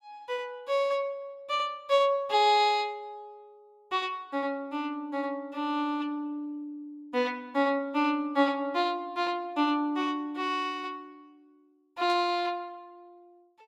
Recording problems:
burst of static; at 12 s; peak -12 dB vs average level

